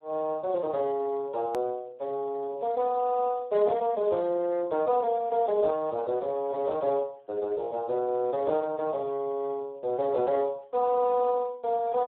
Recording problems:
phone line; 220 Hz to 2.1 kHz, Speex
edit click; at 1.5 s

